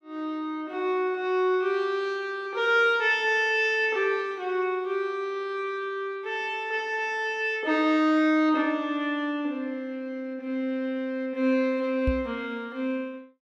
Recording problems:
microphone bump; at 12 s; peak +2 dB vs average level

